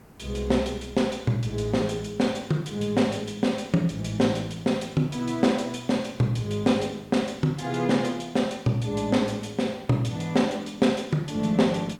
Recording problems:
background hiss; SNR 26 dB

